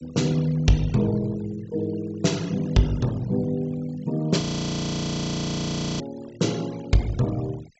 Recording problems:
treble missing; nothing above 7.8 kHz
noise reduction artefacts; signal-to-artefact ratio 20 dB
audio freezing; at 4.5 s for 1.5 s

